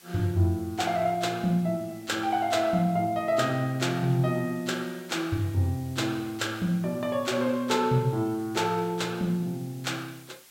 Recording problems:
background hiss; slope +1 dB per octave, SNR 24 dB

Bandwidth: 16 kHz